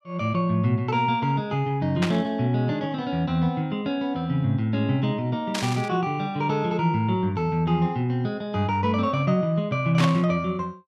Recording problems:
static burst; at 2 s, at 5.5 s and at 10 s; peak +1 dB vs average level

